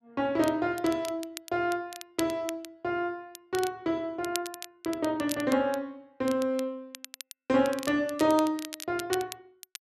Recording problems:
crackling; vinyl, SNR 13 dB

